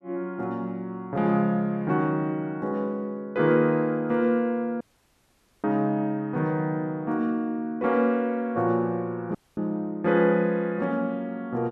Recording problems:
dropout; at 5 s for 1 s and at 9.5 s

